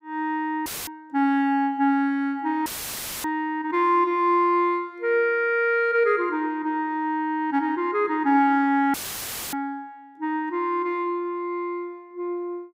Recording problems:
dropout; at 0.5 s, at 2.5 s for 0.5 s and at 9 s for 0.5 s; filled with static

